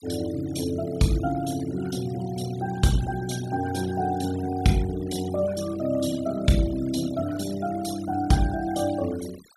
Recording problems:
denoising artefacts; signal-to-artefact ratio 16 dB

